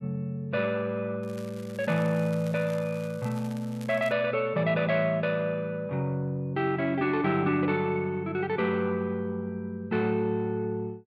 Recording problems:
crackling; from 1 to 4 s; loose cable, SNR 22 dB

